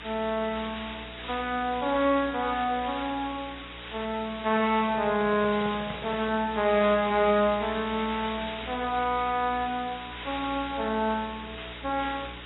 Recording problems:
lossy codec; AAC, log-spectral distance 18 dB, nothing above 3.8 kHz
hum; 60 Hz, harmonics up to 480 Hz, SNR 20 dB
hiss; SNR 12 dB
handling noise; from 4.5 to 6.5 s; peak -7 dB vs average level

